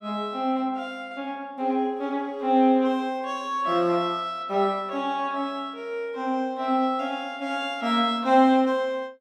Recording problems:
none

